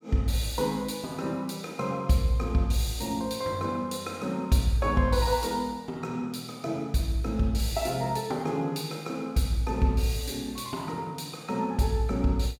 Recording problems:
none

